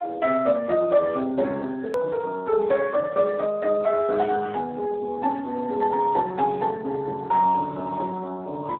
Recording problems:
phone line; 220 Hz to 3 kHz, Speex
hard cut with a click; at 2 s

